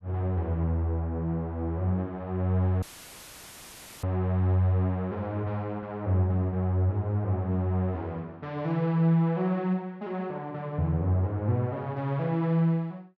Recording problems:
audio cutting out; at 3 s for 1 s; filled with static

